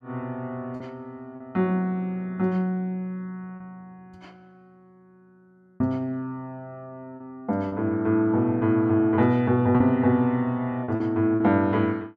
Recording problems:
packet loss; 4% of the sound replaced, filled with repeated pitch periods

